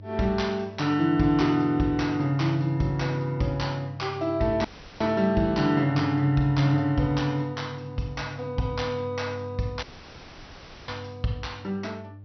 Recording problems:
treble cut off; nothing above 6 kHz
electrical hum; 50 Hz, harmonics up to 600 Hz, SNR 17 dB
audio cutting out; at 4.5 s and at 10 s for 1 s

